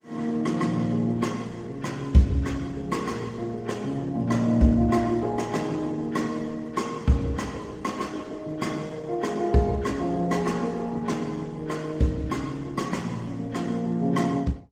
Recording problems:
codec artefacts; Opus, then Opus, log-spectral distance 3 dB, nothing above 19 kHz

